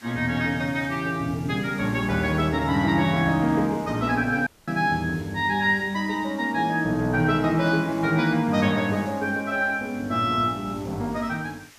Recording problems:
hiss; slope 0 dB per octave, SNR 24 dB
audio cutting out; at 4.5 s

